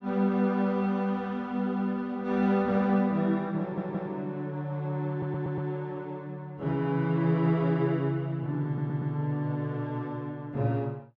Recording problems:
stutter; at 3.5 s, at 5 s and at 8.5 s

